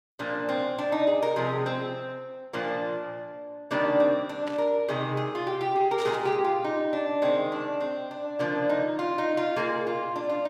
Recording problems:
static burst; at 4.5 s and at 6 s; peak -9 dB vs average level

